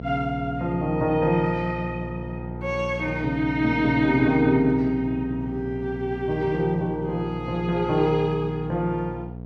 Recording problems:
electrical hum; 60 Hz, harmonics up to 720 Hz, SNR 10 dB

